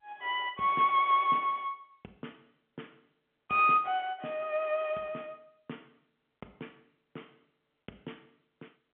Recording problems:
telephone audio; 190 Hz to 3.6 kHz, G.711

